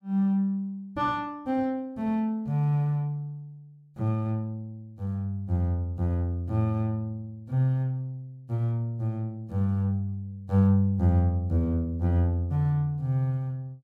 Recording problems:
none

